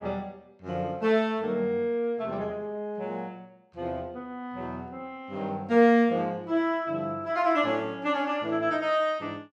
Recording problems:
none

